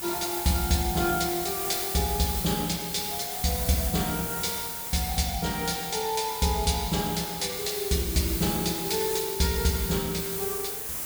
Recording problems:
hiss; slope -2 dB per octave, SNR 3 dB

